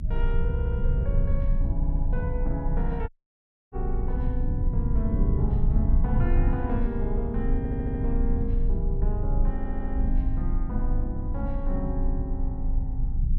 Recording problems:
low-frequency rumble; below 70 Hz, strongest tone 28 Hz, SNR -6 dB
stutter; 4 times, first at 0.5 s
audio cutting out; at 3 s for 0.5 s

